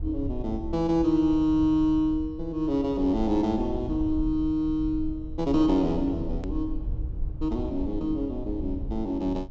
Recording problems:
low-pass filter; nothing above 8 kHz
rumble; below 72 Hz, SNR 11 dB
edit click; at 6.5 s

